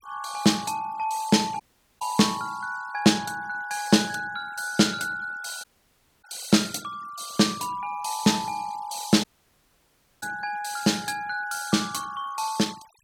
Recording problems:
denoising artefacts; signal-to-artefact ratio 22 dB
dropout; at 1.5 s, at 5.5 s for 0.5 s and at 9 s for 1 s

